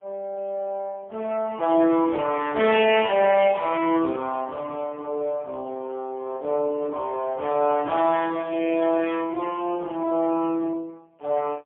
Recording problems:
telephone audio; 240 Hz to 3.3 kHz, AMR-NB, then MP3

